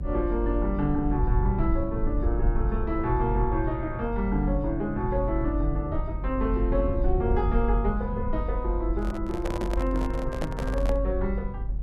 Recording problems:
rumble; below 62 Hz, strongest tone 46 Hz, SNR 1 dB
microphone handling noise; from 9 to 11 s; peak 0 dB vs average level

